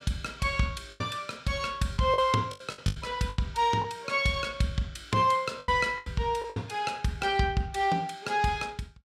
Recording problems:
lost packets; 8% of the sound replaced, filled with the last packet

